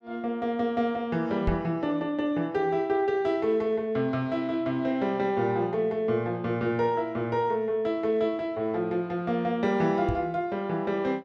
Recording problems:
microphone bump; at 1.5 s and at 10 s; peak +2 dB vs average level

